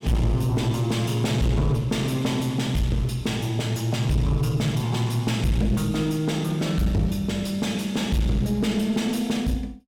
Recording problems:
distorted audio; soft clipping, signal-to-distortion ratio 9 dB

